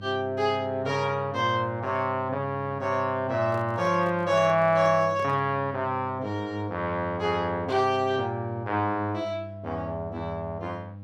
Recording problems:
mains hum; 50 Hz, harmonics up to 800 Hz, SNR 15 dB
microphone handling noise; from 3.5 to 5.5 s; peak -9 dB vs average level

